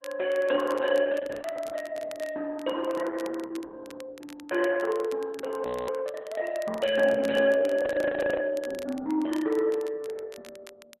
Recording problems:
codec artefacts; Opus, log-spectral distance 3 dB
crackling; vinyl, SNR 21 dB
frozen audio; at 5.5 s and at 8 s for 0.5 s

